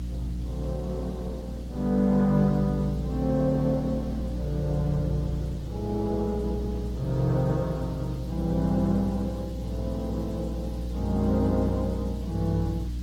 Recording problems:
lossy codec; Opus, log-spectral distance 2 dB
electrical hum; 60 Hz, harmonics up to 300 Hz, SNR 6 dB
background hiss; slope +2 dB per octave, SNR 25 dB
wind on the microphone; below 400 Hz, SNR 24 dB

